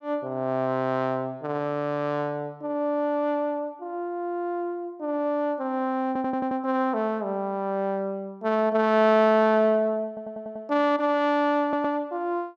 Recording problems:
stutter; at 6 s, at 10 s and at 12 s

